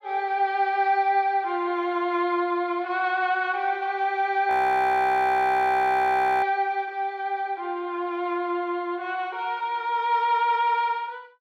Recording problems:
audio freezing; at 4.5 s for 2 s

